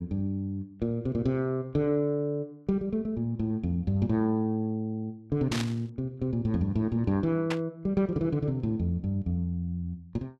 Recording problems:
static burst; at 5.5 s and at 7.5 s; peak 0 dB vs average level

